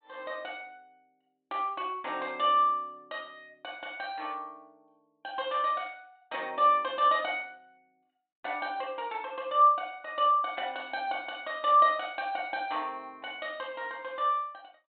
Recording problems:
treble missing; nothing above 4 kHz

